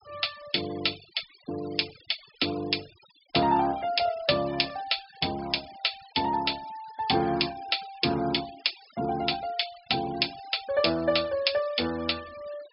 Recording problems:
treble cut off; nothing above 5.5 kHz
noise reduction artefacts; signal-to-artefact ratio 19 dB

